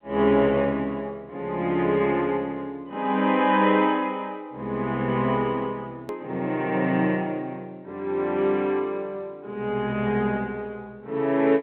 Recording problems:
telephone audio; 220 Hz to 3.4 kHz, G.711
edit click; at 6 s

